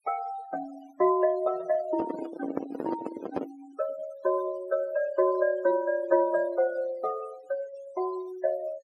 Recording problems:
noise reduction artefacts; signal-to-artefact ratio 18 dB
handling noise; from 2 to 3.5 s; peak +2 dB vs average level

